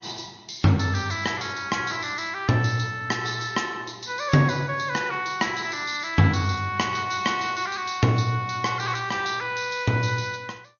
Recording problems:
codec artefacts; MP3, then MP2, log-spectral distance 7 dB, nothing above 6.5 kHz

